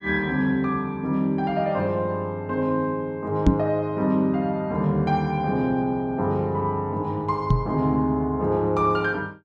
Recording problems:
microphone bump; at 3.5 s and at 7.5 s; peak +10 dB vs average level

